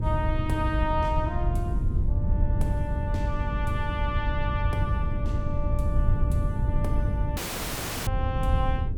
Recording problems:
hum; 50 Hz, harmonics up to 500 Hz, SNR 6 dB
rumble; below 100 Hz, SNR -4 dB
dropout; at 7.5 s for 0.5 s

